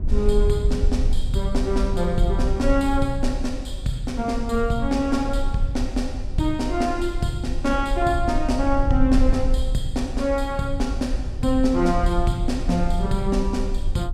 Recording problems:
low-frequency rumble; below 54 Hz, SNR 4 dB

